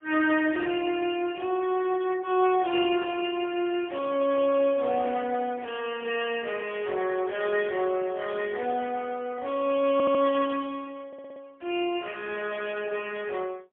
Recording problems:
phone line; 260 Hz to 3.4 kHz, AMR-NB, then MP3
stutter; at 10 s and at 11 s

